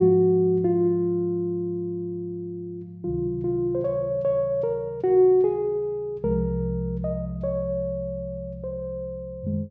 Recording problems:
none

